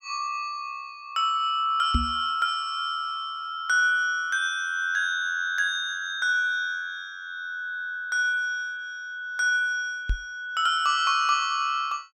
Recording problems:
microphone thump; at 2 s and at 10 s; peak +4 dB vs average level

